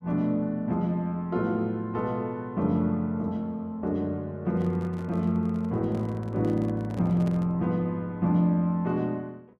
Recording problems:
handling noise; from 4.5 to 7.5 s; peak -8 dB vs average level

